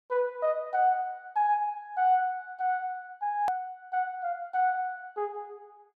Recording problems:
edit click; at 3.5 s

